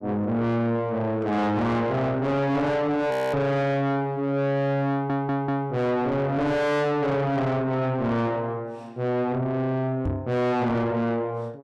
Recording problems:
distorted audio; soft clipping, signal-to-distortion ratio 7 dB
frozen audio; at 3 s
stutter; at 5 s
microphone bump; at 10 s; peak +1 dB vs average level

